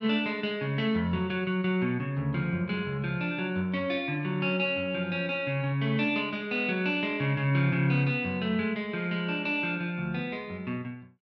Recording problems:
none

